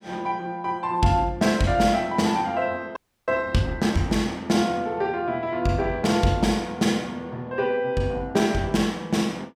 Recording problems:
audio freezing; at 3 s

